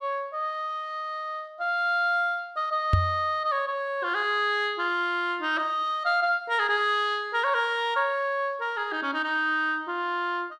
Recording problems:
microphone bump; at 3 s; peak +7 dB vs average level

